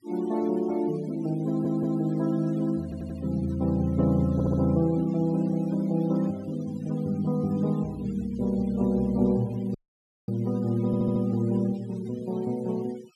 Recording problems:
noise reduction artefacts; signal-to-artefact ratio 24 dB
audio stuttering; 4 times, first at 1.5 s
audio cutting out; at 10 s for 0.5 s

